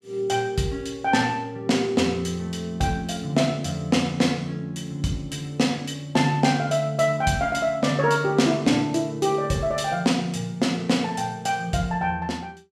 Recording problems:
none

